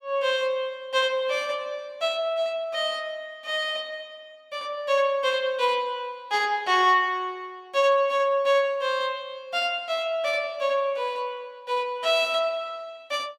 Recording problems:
none

